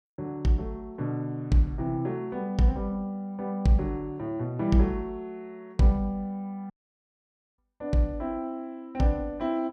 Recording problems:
dropout; at 6.5 s for 1 s

